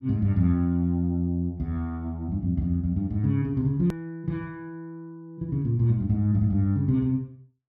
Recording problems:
edit click; at 4 s

